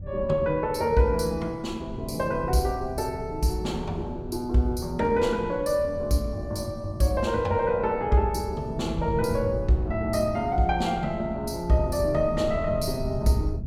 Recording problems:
wind on the microphone; below 130 Hz, SNR 12 dB

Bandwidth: 16.5 kHz